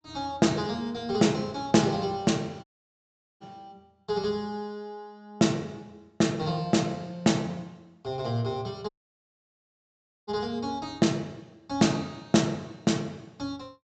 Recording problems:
low-pass filter; nothing above 8 kHz
audio cutting out; at 2.5 s for 1 s and at 9 s for 1.5 s

